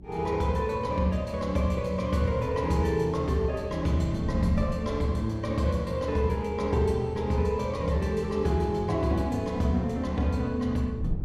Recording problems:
electrical hum; 60 Hz, harmonics up to 360 Hz, SNR 21 dB
wind noise; below 150 Hz, SNR 16 dB

